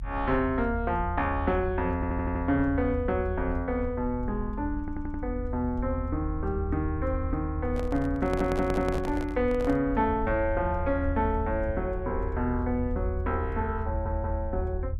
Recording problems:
rumble; below 80 Hz, SNR 5 dB
stutter; 4 times, first at 2 s
microphone handling noise; from 7.5 to 10 s; peak -2 dB vs average level

